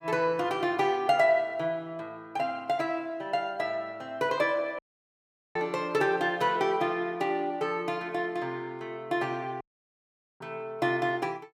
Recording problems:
audio cutting out; at 5 s for 1 s and at 9.5 s for 1 s

